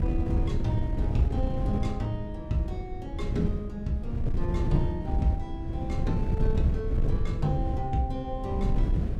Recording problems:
wind on the microphone; below 120 Hz, SNR -2 dB

